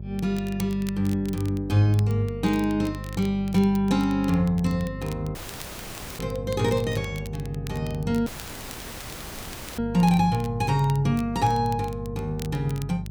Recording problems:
mains hum; 50 Hz, harmonics up to 450 Hz, SNR 11 dB
crackling; vinyl, SNR 21 dB
dropout; at 5.5 s for 1 s and at 8.5 s for 1.5 s

